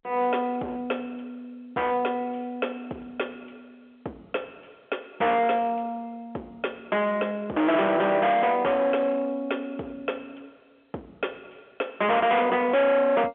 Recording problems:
phone line; 340 Hz to 3.5 kHz, G.711
distortion; hard clipping, signal-to-distortion ratio 6 dB

